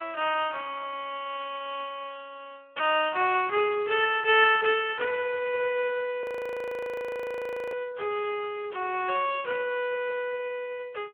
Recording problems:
phone line; 320 Hz to 3.3 kHz, Speex
audio freezing; at 6 s for 1.5 s

